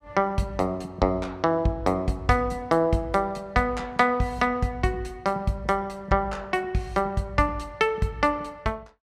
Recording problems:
none

